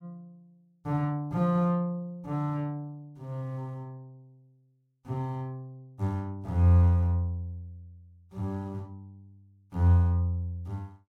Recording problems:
none

